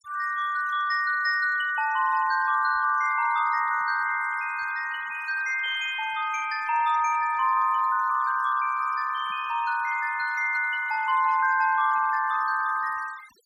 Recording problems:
noise reduction artefacts; signal-to-artefact ratio 19 dB

